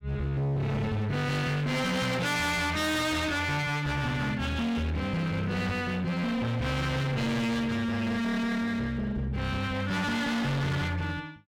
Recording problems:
distortion; hard clipping, uneven, signal-to-distortion ratio 7 dB

